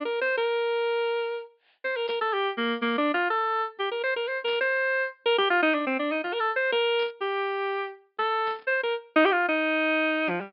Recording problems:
low-pass filter; nothing above 5.5 kHz
burst of static; 4 times, first at 2 s; peak -14 dB vs average level

